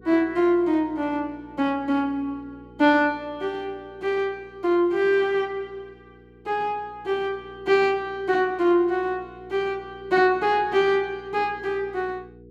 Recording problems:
hum; 60 Hz, harmonics up to 480 Hz, SNR 24 dB

